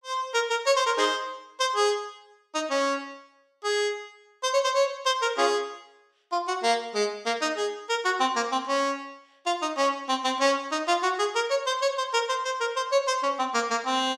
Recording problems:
none

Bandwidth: 14.5 kHz